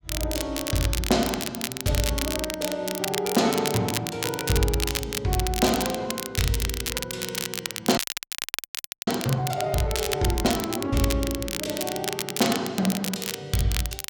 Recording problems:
crackle; vinyl, SNR 4 dB
audio freezing; at 8 s for 1 s

